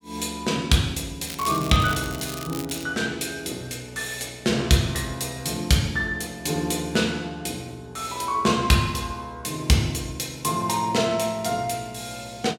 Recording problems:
crackle; from 1.5 to 3 s; loose cable, SNR 12 dB

